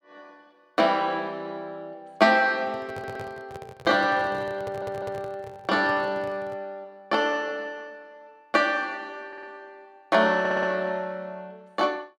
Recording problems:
handling noise; from 2.5 to 6.5 s; peak -9 dB vs average level
stutter; 4 times, first at 3 s

